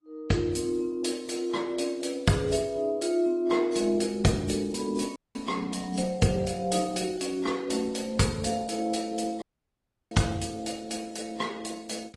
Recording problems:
codec artefacts; Opus, then AAC, log-spectral distance 5 dB, nothing above 11 kHz
dropout; at 5 s and at 9.5 s for 0.5 s

